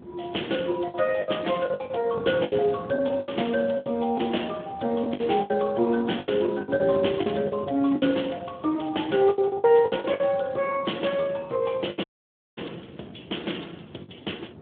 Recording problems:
telephone audio; 220 Hz to 3.6 kHz, Speex
wind on the microphone; below 390 Hz, SNR 17 dB
packet loss; 12% of the sound replaced, filled with the last packet
dropout; at 12 s for 0.5 s

